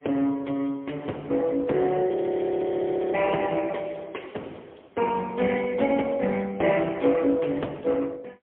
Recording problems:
telephone audio; 220 Hz to 3.3 kHz, AMR-NB, then MP3
frozen audio; at 2 s for 1 s

